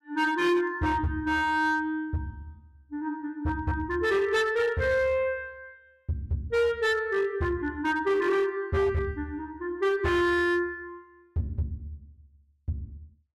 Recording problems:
distorted audio; hard clipping, signal-to-distortion ratio 12 dB

